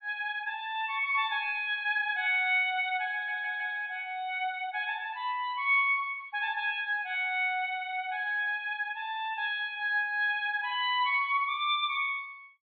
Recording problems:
treble missing; nothing above 4.2 kHz
stutter; at 3 s

